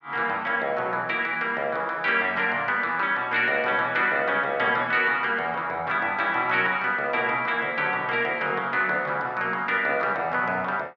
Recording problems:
none

